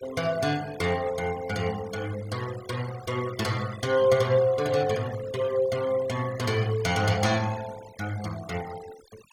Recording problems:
denoising artefacts; signal-to-artefact ratio 17 dB

